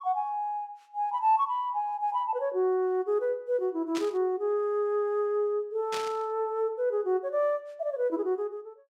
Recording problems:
static burst; at 4 s and at 6 s; peak -3 dB vs average level

